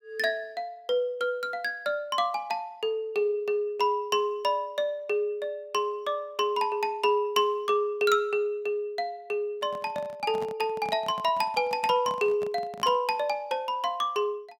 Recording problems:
handling noise; from 9.5 to 13 s; peak -8 dB vs average level

